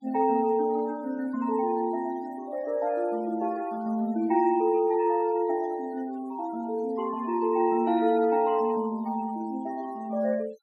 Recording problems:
noise reduction artefacts; signal-to-artefact ratio 22 dB

